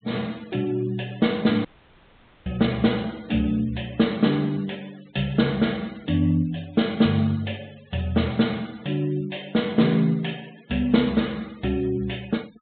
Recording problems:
treble missing; nothing above 4 kHz
noise reduction artefacts; signal-to-artefact ratio 25 dB
dropout; at 1.5 s for 1 s

